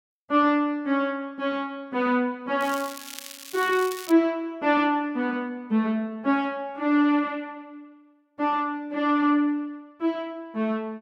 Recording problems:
crackling; from 2.5 to 4 s; loose cable, SNR 14 dB

